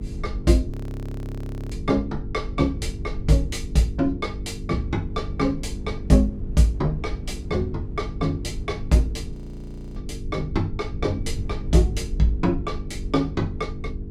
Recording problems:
hum; 50 Hz, harmonics up to 450 Hz, SNR 12 dB
rumble; below 76 Hz, SNR 11 dB
wind noise; below 120 Hz, SNR 16 dB
frozen audio; at 0.5 s for 1 s and at 9.5 s for 0.5 s

